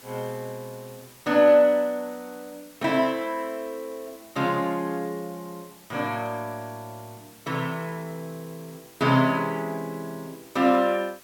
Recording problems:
background hiss; slope -1 dB per octave, SNR 24 dB

